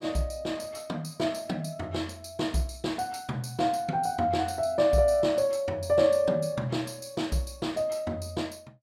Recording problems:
none

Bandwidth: 16 kHz